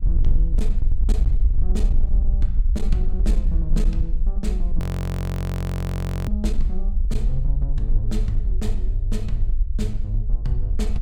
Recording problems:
distortion; hard clipping, uneven, signal-to-distortion ratio 12 dB
low-frequency rumble; below 52 Hz, SNR -7 dB
audio freezing; at 5 s for 1.5 s

